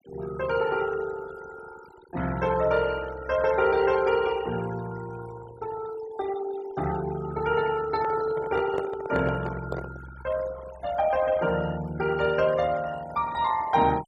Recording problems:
denoising artefacts; signal-to-artefact ratio 16 dB
handling noise; from 8 to 10 s; peak -1 dB vs average level

